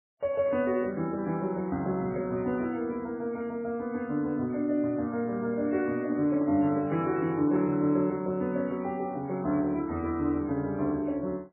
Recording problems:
lossy codec; MP3, log-spectral distance 2 dB, nothing above 7.8 kHz
handling noise; from 5.5 to 8 s; peak -7 dB vs average level

